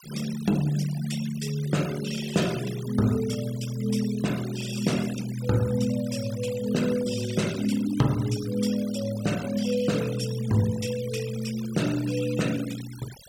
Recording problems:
noise reduction artefacts; signal-to-artefact ratio 14 dB

